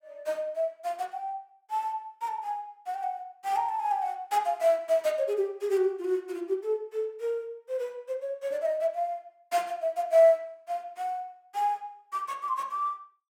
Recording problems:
none

